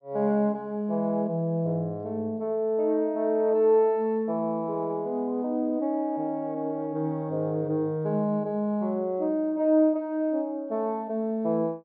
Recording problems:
low-pass filter; nothing above 5 kHz

